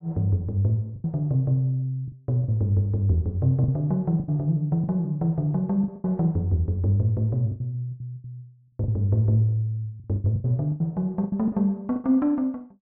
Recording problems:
lost packets; 10% of the sound replaced, filled with the last packet

